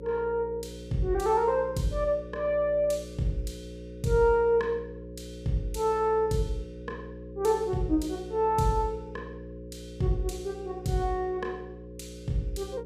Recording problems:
hum; 60 Hz, harmonics up to 540 Hz, SNR 14 dB

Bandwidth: 15.5 kHz